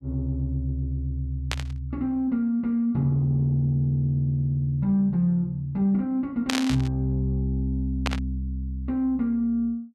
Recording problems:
burst of static; at 1.5 s, at 6.5 s and at 8 s; peak +3 dB vs average level

